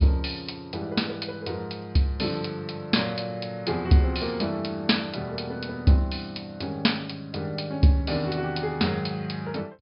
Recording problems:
treble cut off; nothing above 5.5 kHz

